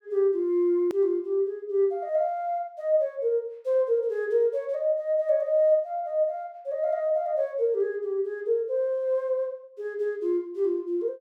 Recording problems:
click at an edit; at 1 s

